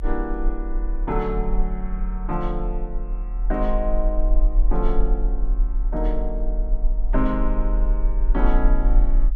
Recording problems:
rumble; below 38 Hz, strongest tone 38 Hz, SNR -3 dB

